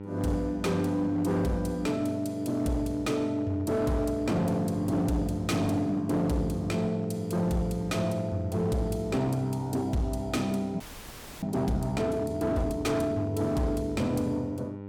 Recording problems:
distortion; hard clipping, signal-to-distortion ratio 12 dB
electrical hum; 50 Hz, harmonics up to 1.4 kHz, SNR 12 dB
frozen audio; at 11 s for 0.5 s

